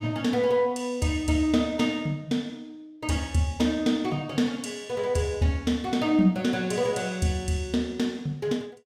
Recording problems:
none

